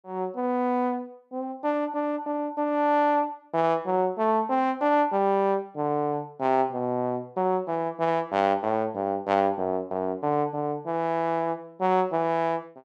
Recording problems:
none

